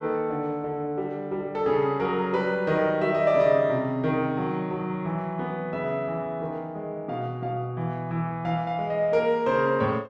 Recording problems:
none

